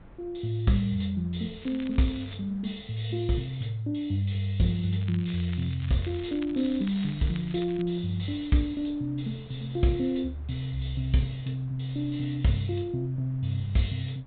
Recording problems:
treble missing; nothing above 4 kHz
wind on the microphone; below 270 Hz, SNR 23 dB
crackling; at 1.5 s and from 5 to 8 s; loose cable, SNR 20 dB

